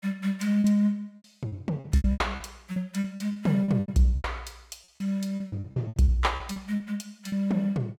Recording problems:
lost packets; 17% of the sound replaced, filled with repeated pitch periods

